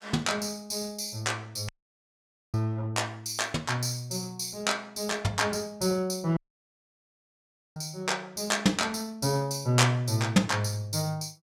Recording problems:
audio cutting out; at 1.5 s for 1 s and at 6.5 s for 1.5 s

